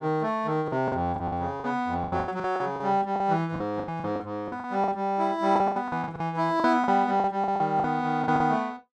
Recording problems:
packet loss; 16% of the sound replaced, filled with the last packet

